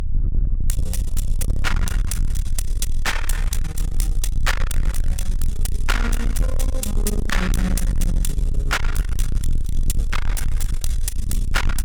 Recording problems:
distortion; soft clipping, signal-to-distortion ratio 7 dB
rumble; below 54 Hz, strongest tone 22 Hz, SNR -1 dB

